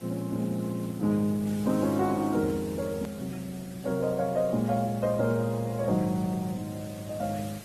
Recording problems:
lossy codec; AAC, then Opus, log-spectral distance 5 dB, nothing above 13.1 kHz
background hiss; slope -3 dB per octave, SNR 19 dB
edit click; at 3 s

